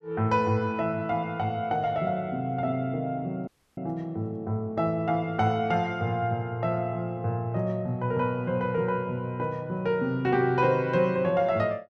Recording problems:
audio cutting out; at 3.5 s

